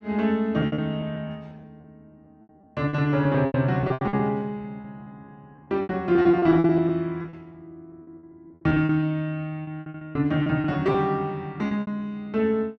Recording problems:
lost packets; 16% of the sound replaced, filled with repeated pitch periods

